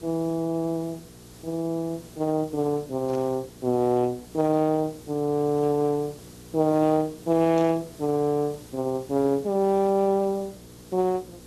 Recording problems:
lossy codec; Speex, log-spectral distance 2 dB
hum; 60 Hz, harmonics up to 480 Hz, SNR 23 dB
background hiss; SNR 23 dB
static burst; at 3 s and at 7.5 s; peak -12 dB vs average level

